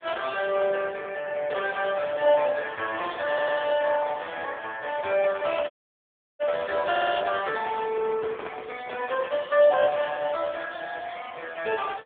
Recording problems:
telephone audio; 220 Hz to 3.5 kHz, AMR-NB
stutter; at 3.5 s and at 7 s
dropout; at 5.5 s for 0.5 s
microphone handling noise; from 8 to 9.5 s; peak -8 dB vs average level

